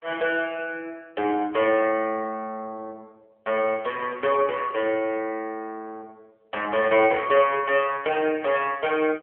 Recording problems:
phone line; 260 Hz to 3.3 kHz, AMR-NB

